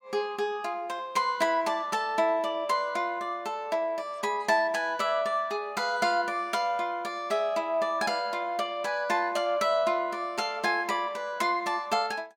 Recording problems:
none

